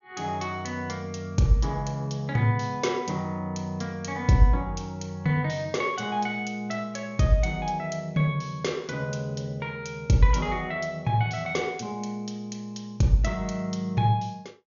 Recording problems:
low-pass filter; nothing above 6.9 kHz

